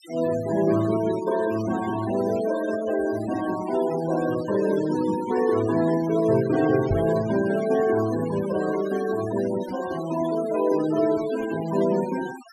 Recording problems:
noise reduction artefacts; signal-to-artefact ratio 14 dB
microphone thump; at 7 s; peak +1 dB vs average level

